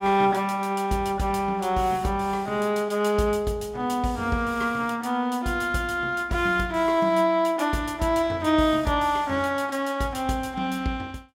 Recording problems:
none

